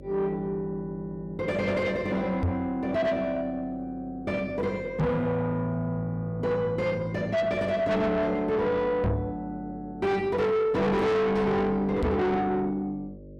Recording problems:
distorted audio; soft clipping, signal-to-distortion ratio 7 dB
hum; 50 Hz, harmonics up to 600 Hz, SNR 19 dB
microphone bump; 4 times, first at 2.5 s; peak +5 dB vs average level

